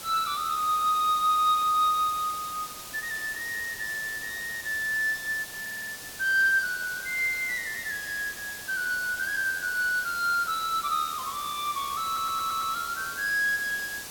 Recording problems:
hiss; slope -1 dB per octave, SNR 11 dB
stutter; at 5.5 s and at 12 s

